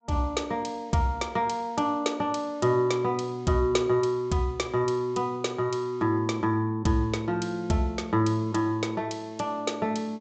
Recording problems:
treble missing; nothing above 8 kHz

